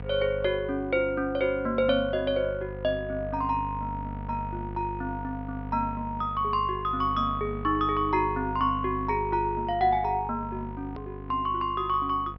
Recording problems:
treble cut off; nothing above 5.5 kHz
hum; 50 Hz, harmonics up to 1.3 kHz, SNR 11 dB
hard cut with a click; at 11 s

